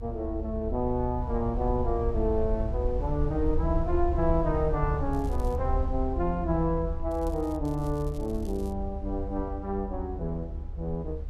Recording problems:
low-frequency rumble; below 72 Hz, SNR 3 dB
crackle; at 5 s, at 7 s and from 7.5 to 8.5 s; loose cable, SNR 25 dB

